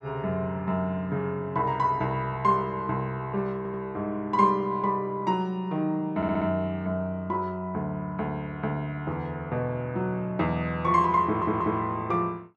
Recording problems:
audio stuttering; at 3.5 s, at 6 s and at 11 s

